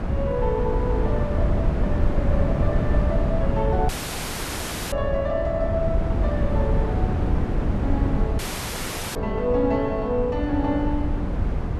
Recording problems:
wind noise; below 180 Hz, SNR -2 dB
dropout; at 4 s for 1 s and at 8.5 s for 1 s

